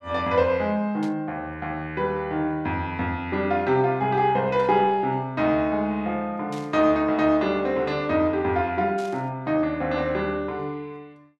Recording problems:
static burst; 4 times, first at 1 s; peak -14 dB vs average level

